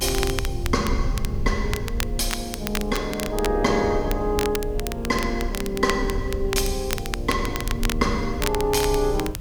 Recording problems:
hiss; SNR 26 dB
low-frequency rumble; below 72 Hz, strongest tone 32 Hz, SNR 6 dB
crackle; vinyl, SNR 8 dB

